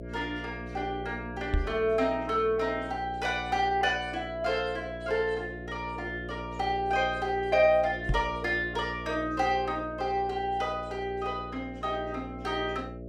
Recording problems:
hum; 60 Hz, harmonics up to 660 Hz, SNR 12 dB
microphone bump; at 1.5 s and at 8 s; peak +5 dB vs average level

